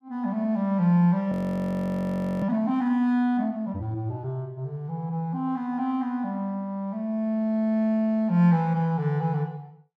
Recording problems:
frozen audio; at 1.5 s for 1 s

